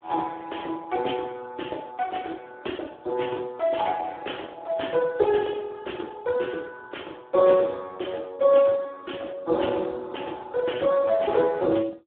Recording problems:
telephone audio; 280 Hz to 3.5 kHz, Speex

